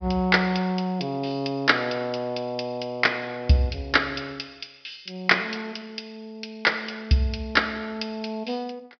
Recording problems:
treble missing; nothing above 5.5 kHz

